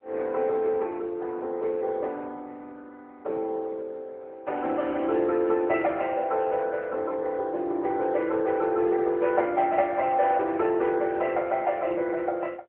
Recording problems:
telephone audio; 300 Hz to 3 kHz, AMR-NB

